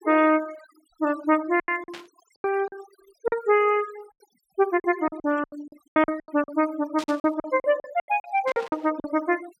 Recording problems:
noise reduction artefacts; signal-to-artefact ratio 20 dB
packet loss; 15% of the sound replaced, filled with silence
static burst; at 2 s, at 7 s and at 8.5 s; peak -8 dB vs average level

